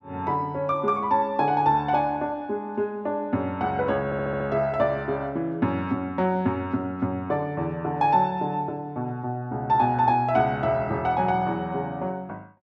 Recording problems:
stutter; at 4 s

